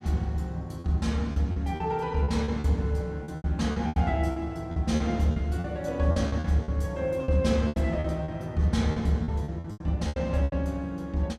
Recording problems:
lost packets; 13% of the sound replaced, filled with repeated pitch periods

